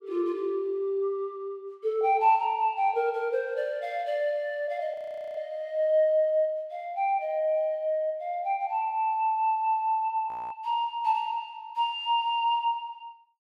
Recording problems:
audio freezing; at 5 s and at 10 s

